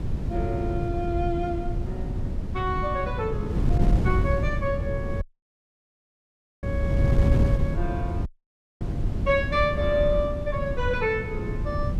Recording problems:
wind on the microphone; below 150 Hz, SNR -1 dB
audio cutting out; at 5 s for 1.5 s and at 8.5 s for 0.5 s

